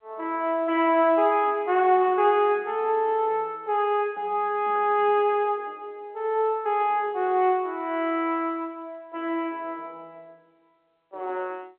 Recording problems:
phone line; 340 Hz to 3.3 kHz, G.711

